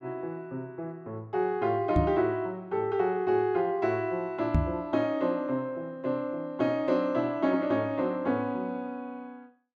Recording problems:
microphone bump; at 2 s and at 4.5 s; peak +7 dB vs average level

